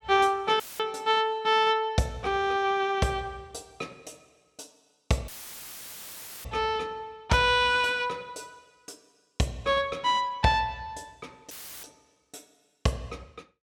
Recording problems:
dropout; at 0.5 s, at 5.5 s for 1 s and at 12 s; filled with static

